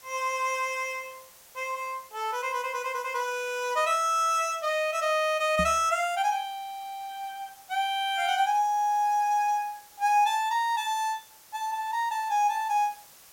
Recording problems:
hiss; slope 0 dB per octave, SNR 23 dB
microphone bump; at 5.5 s; peak -1 dB vs average level

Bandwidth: 16.5 kHz